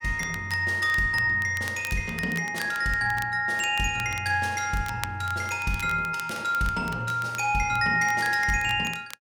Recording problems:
crackling; vinyl, SNR 18 dB

